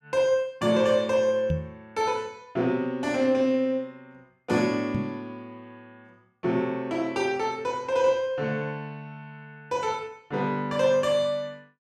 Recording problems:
microphone bump; at 1.5 s and at 5 s; peak +2 dB vs average level

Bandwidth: 13.5 kHz